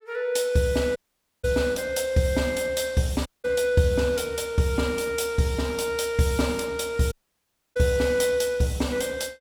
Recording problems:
audio cutting out; at 1 s, at 3.5 s and at 7 s for 0.5 s

